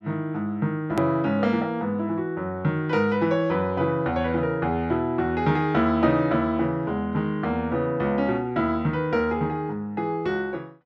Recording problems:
edit click; at 1 s

